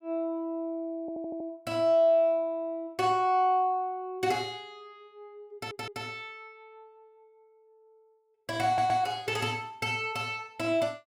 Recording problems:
stutter; at 1 s, at 5.5 s and at 8.5 s

